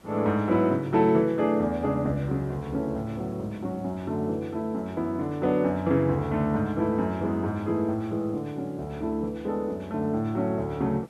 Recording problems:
hiss; slope -5 dB per octave, SNR 28 dB

